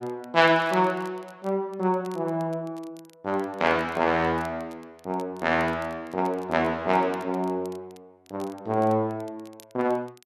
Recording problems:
crackle; vinyl, SNR 28 dB

